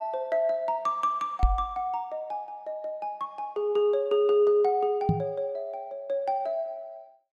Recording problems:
microphone thump; at 1.5 s and at 5 s; peak +7 dB vs average level

